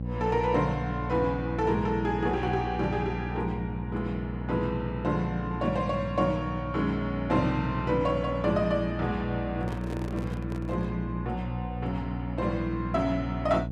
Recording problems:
hum; 60 Hz, harmonics up to 540 Hz, SNR 5 dB
handling noise; from 9.5 to 11 s; peak -7 dB vs average level

